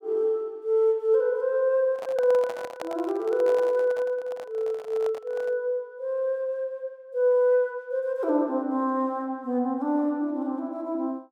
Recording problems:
handling noise; from 2 to 5.5 s; peak -5 dB vs average level

